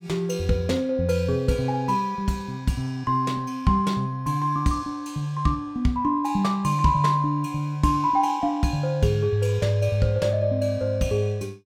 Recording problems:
none

